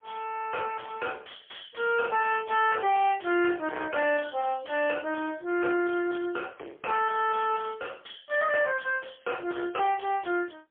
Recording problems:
telephone audio; 300 Hz to 3.3 kHz, AMR-NB, then MP3
distorted audio; soft clipping, signal-to-distortion ratio 8 dB

